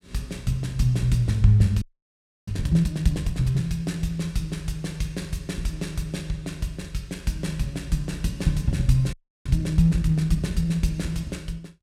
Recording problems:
frozen audio; at 2 s for 0.5 s and at 9 s

